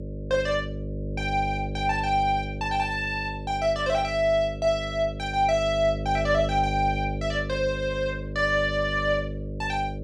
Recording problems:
electrical hum; 50 Hz, harmonics up to 600 Hz, SNR 7 dB

